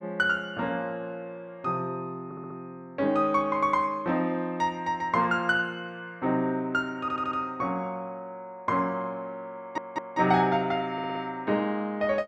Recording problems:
audio stuttering; 4 times, first at 2 s

